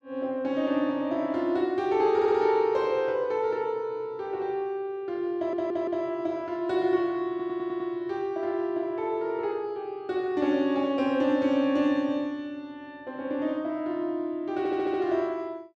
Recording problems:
audio stuttering; 4 times, first at 2 s

